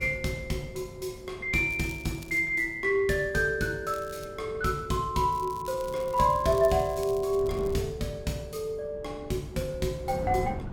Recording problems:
wind noise; below 250 Hz, SNR 15 dB
crackle; at 1.5 s, at 4 s and from 5.5 to 8 s; loose cable, SNR 21 dB

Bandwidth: 17 kHz